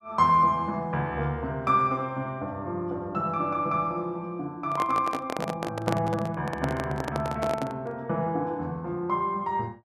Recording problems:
microphone handling noise; from 4.5 to 8 s; peak +2 dB vs average level

